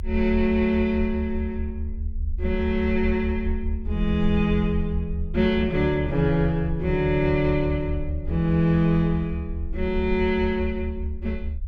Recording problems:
rumble; below 74 Hz, SNR 7 dB

